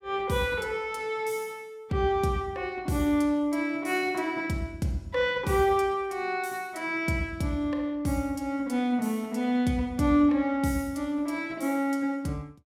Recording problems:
none

